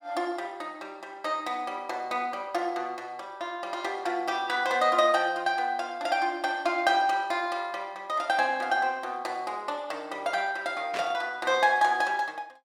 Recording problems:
static burst; at 11 s; peak -3 dB vs average level

